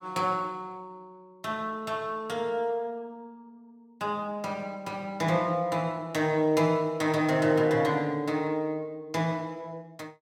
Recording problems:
none

